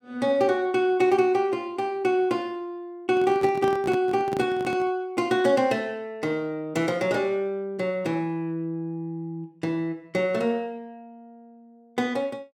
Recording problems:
handling noise; from 3 to 5 s; peak -4 dB vs average level

